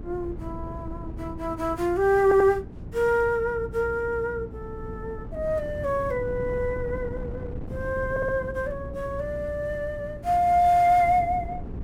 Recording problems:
hum; 60 Hz, harmonics up to 420 Hz, SNR 18 dB
wind noise; below 200 Hz, SNR 14 dB
audio stuttering; at 2 s and at 8 s

